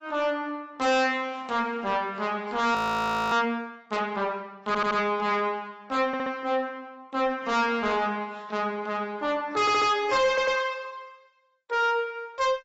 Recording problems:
lossy codec; AAC, log-spectral distance 2 dB, nothing above 16.1 kHz
distortion; soft clipping, signal-to-distortion ratio 7 dB
audio freezing; at 3 s for 0.5 s
audio stuttering; 4 times, first at 4.5 s

